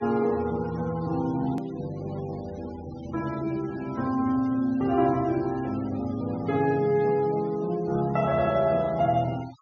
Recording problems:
low-pass filter; nothing above 6.5 kHz
noise reduction artefacts; signal-to-artefact ratio 21 dB
hard cut with a click; at 1.5 s

